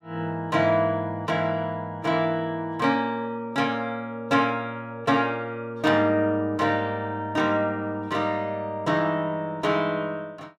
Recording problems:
none

